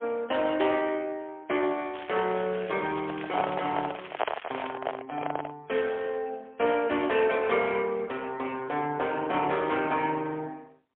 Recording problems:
phone line; 320 Hz to 3.4 kHz, AMR-NB, then MP3
crackling; from 2 to 4.5 s; loose cable, SNR 15 dB
handling noise; from 3 to 5.5 s; peak +6 dB vs average level

